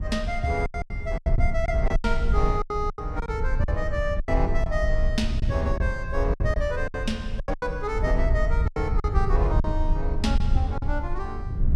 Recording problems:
rumble; below 68 Hz, SNR -1 dB
packet loss; 11% of the sound replaced, filled with silence

